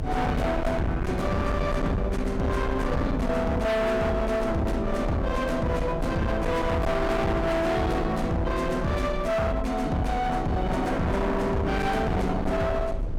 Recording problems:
distortion; hard clipping, signal-to-distortion ratio 6 dB
low-frequency rumble; below 250 Hz, SNR 7 dB

